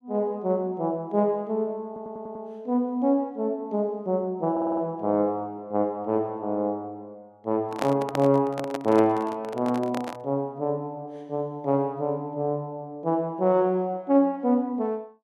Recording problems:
stutter; at 2 s and at 4.5 s
microphone handling noise; from 7.5 to 10 s; peak +1 dB vs average level

